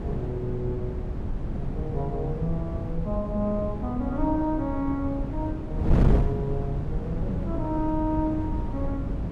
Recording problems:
wind noise; below 190 Hz, SNR 0 dB

